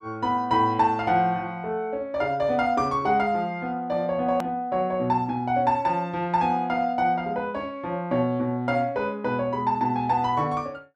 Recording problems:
hard cut with a click; at 4.5 s

